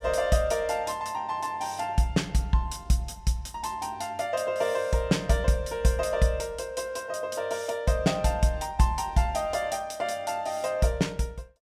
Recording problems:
none

